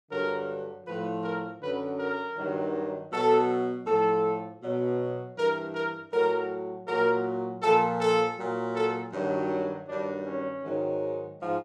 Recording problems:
none

